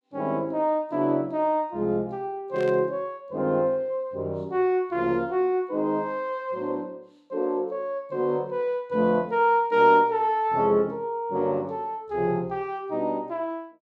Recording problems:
static burst; at 2.5 s; peak -14 dB vs average level

